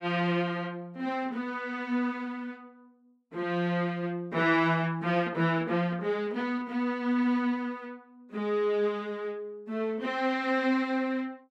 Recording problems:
none

